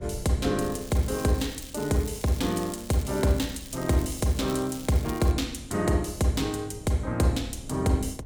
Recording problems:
wind noise; below 170 Hz, SNR 18 dB
crackle; from 0.5 to 3 s and from 3 to 5.5 s; loose cable, SNR 16 dB

